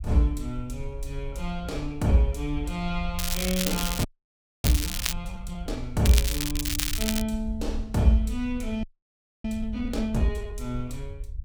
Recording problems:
rumble; below 62 Hz, SNR 9 dB
crackling; from 3 to 5 s and from 6 to 7 s; loose cable, SNR 2 dB
frozen audio; at 4 s for 0.5 s and at 9 s for 0.5 s

